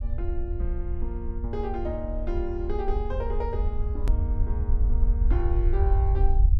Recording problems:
low-frequency rumble; below 64 Hz, SNR -6 dB
click at an edit; at 4 s

